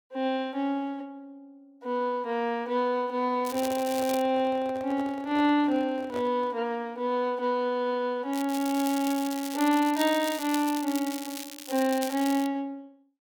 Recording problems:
crackle; at 3.5 s and from 8.5 to 12 s; loose cable, SNR 11 dB
handling noise; from 3.5 to 6.5 s; peak -7 dB vs average level

